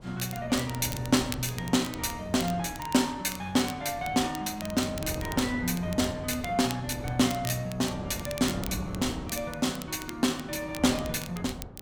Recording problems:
wind noise; below 400 Hz, SNR 12 dB
crackling; vinyl, SNR 14 dB

